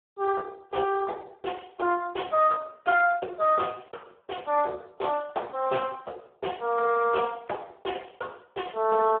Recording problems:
phone line; 320 Hz to 2.2 kHz, Speex

